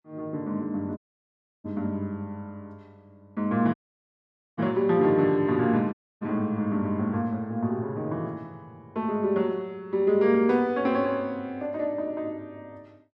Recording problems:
audio cutting out; at 1 s for 0.5 s, at 3.5 s for 1 s and at 6 s

